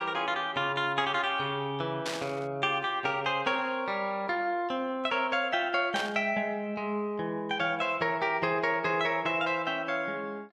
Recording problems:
burst of static; at 2 s and at 6 s; peak -2 dB vs average level

